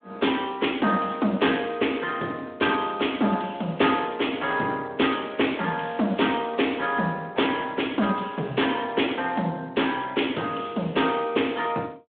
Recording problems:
phone line; 150 Hz to 3.5 kHz, Speex

